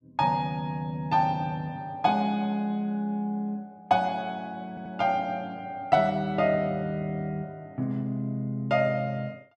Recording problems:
audio stuttering; at 4.5 s

